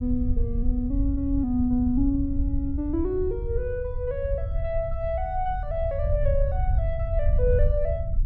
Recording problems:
rumble; below 78 Hz, SNR 1 dB

